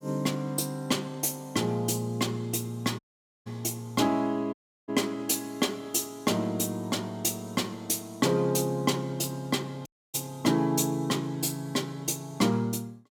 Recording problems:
audio cutting out; at 3 s, at 4.5 s and at 10 s

